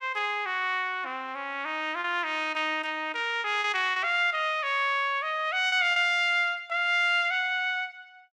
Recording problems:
packet loss; 3% of the sound replaced, filled with repeated pitch periods

